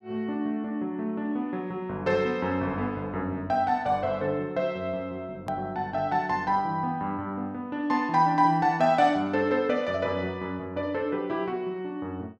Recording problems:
hard cut with a click; at 5.5 s

